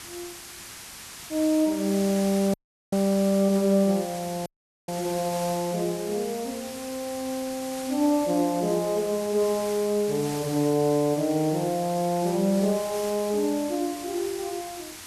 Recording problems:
hiss; SNR 12 dB
audio cutting out; at 2.5 s and at 4.5 s

